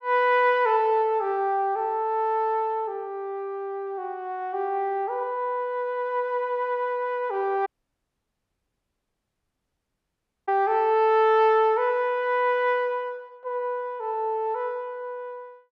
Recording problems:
audio cutting out; at 7.5 s for 3 s

